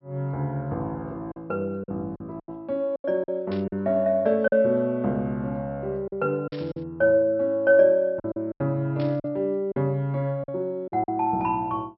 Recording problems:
treble cut off; nothing above 5.5 kHz
packet loss; 7% of the sound replaced, filled with silence
burst of static; at 3.5 s, at 6.5 s and at 9 s; peak -13 dB vs average level

